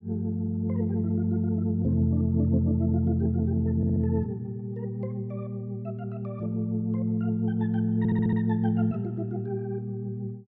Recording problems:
stutter; at 4 s and at 8 s

